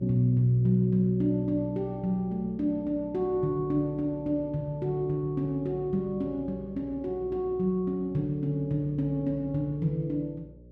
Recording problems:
hum; 60 Hz, harmonics up to 600 Hz, SNR 20 dB

